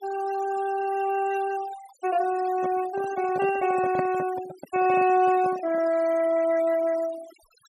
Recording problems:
noise reduction artefacts; signal-to-artefact ratio 17 dB
microphone handling noise; from 2.5 to 6 s; peak -2 dB vs average level

